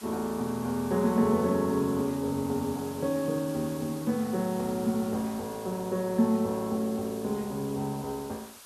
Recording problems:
background hiss; SNR 17 dB

